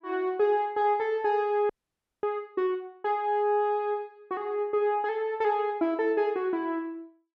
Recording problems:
audio freezing; at 1.5 s for 0.5 s

